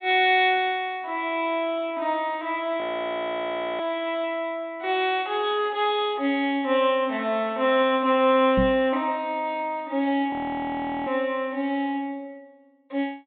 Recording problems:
treble cut off; nothing above 4 kHz
frozen audio; at 3 s for 1 s and at 10 s for 0.5 s
microphone bump; at 8.5 s; peak +2 dB vs average level

